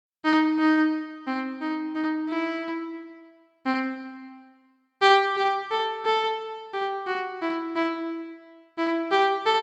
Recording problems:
none

